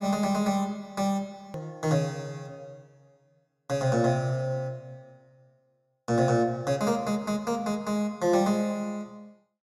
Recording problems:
click at an edit; at 1.5 s

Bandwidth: 16.5 kHz